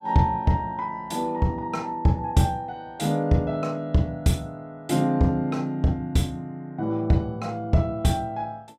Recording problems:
none

